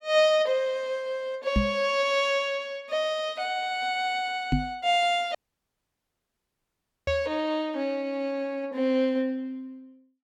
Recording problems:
microphone bump; at 1.5 s, at 4.5 s and at 7 s; peak +6 dB vs average level
audio cutting out; at 5.5 s for 1.5 s

